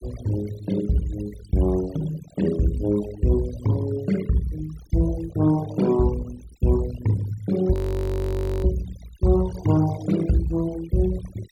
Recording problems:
noise reduction artefacts; signal-to-artefact ratio 17 dB
audio freezing; at 7.5 s for 1 s

